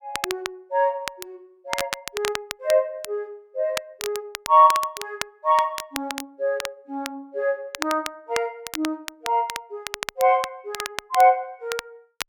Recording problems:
crackling; vinyl, SNR 10 dB

